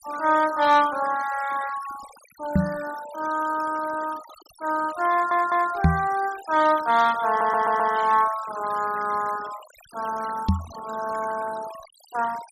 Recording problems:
denoising artefacts; signal-to-artefact ratio 17 dB
knock on the microphone; at 2.5 s, at 6 s and at 10 s; peak +8 dB vs average level
stutter; at 5 s and at 7.5 s

